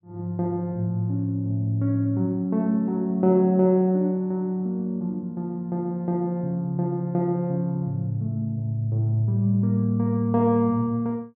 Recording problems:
none

